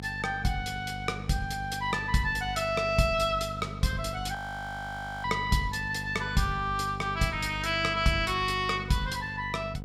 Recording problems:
hum; 50 Hz, harmonics up to 950 Hz, SNR 11 dB
frozen audio; at 4.5 s for 1 s

